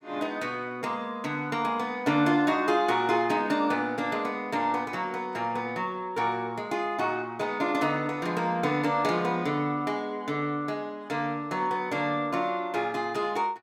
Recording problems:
none

